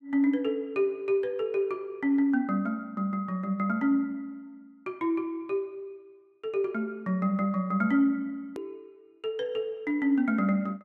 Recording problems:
hard cut with a click; at 8.5 s

